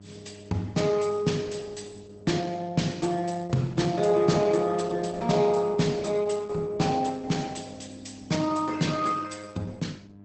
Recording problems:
codec artefacts; Opus, log-spectral distance 5 dB, nothing above 8.2 kHz
electrical hum; 50 Hz, harmonics up to 1 kHz, SNR 21 dB

